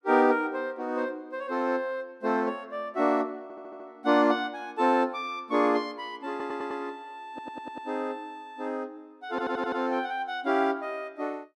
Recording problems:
stutter; 4 times, first at 3.5 s

